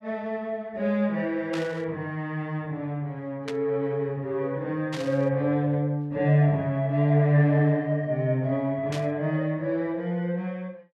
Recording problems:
burst of static; 4 times, first at 1.5 s; peak -6 dB vs average level

